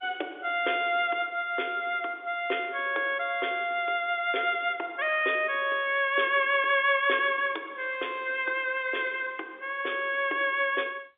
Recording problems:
phone line; 300 Hz to 3.6 kHz, G.711

